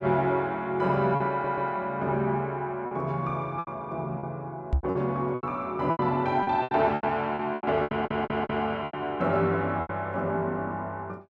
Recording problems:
lost packets; 10% of the sound replaced, filled with repeated pitch periods
audio stuttering; at 1.5 s and at 8 s
microphone thump; at 4.5 s; peak +5 dB vs average level

